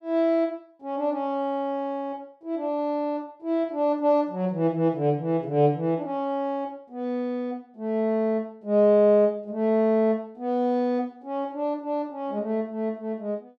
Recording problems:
none

